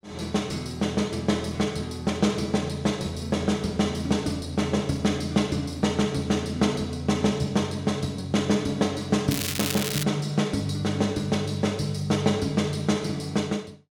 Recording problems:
crackling; at 9.5 s; loose cable, SNR 3 dB

